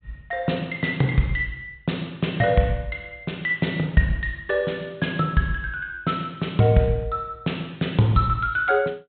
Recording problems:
treble missing; nothing above 4 kHz

